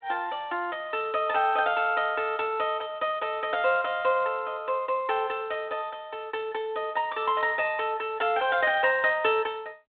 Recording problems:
telephone audio; 300 Hz to 3.7 kHz, G.726

